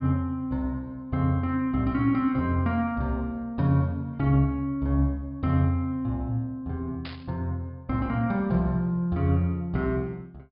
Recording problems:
low-pass filter; nothing above 5.1 kHz
static burst; at 7 s; peak -9 dB vs average level

